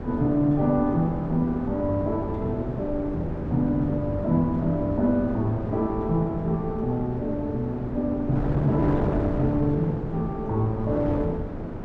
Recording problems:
wind noise; below 410 Hz, SNR 7 dB

